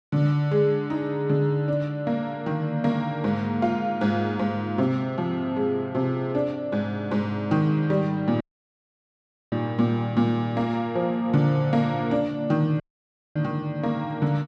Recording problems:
dropout; at 8.5 s for 1 s and at 13 s for 0.5 s

